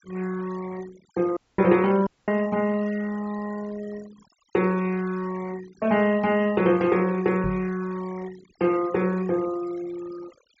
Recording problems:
treble missing; nothing above 8 kHz
denoising artefacts; signal-to-artefact ratio 20 dB
audio cutting out; at 1.5 s and at 2 s
microphone thump; at 7.5 s; peak -3 dB vs average level

